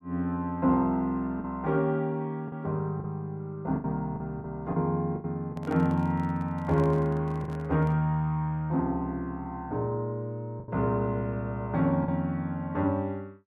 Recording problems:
lost packets; 5% of the sound replaced, filled with the last packet
microphone handling noise; from 5.5 to 8 s; peak -10 dB vs average level

